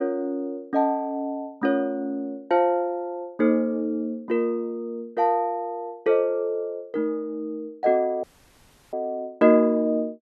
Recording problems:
audio cutting out; at 8 s for 0.5 s

